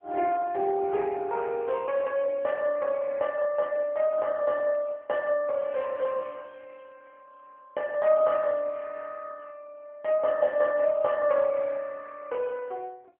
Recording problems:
telephone audio; 220 Hz to 3.1 kHz, AMR-NB

